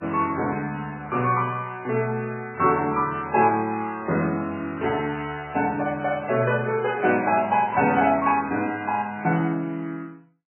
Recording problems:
lossy compression; MP3, log-spectral distance 3 dB, nothing above 2.5 kHz

